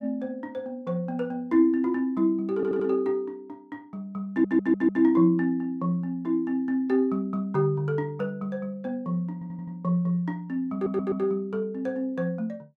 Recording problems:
stutter; 4 times, first at 2.5 s

